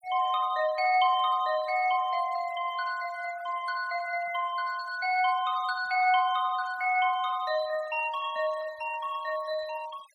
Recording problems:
noise reduction artefacts; signal-to-artefact ratio 20 dB

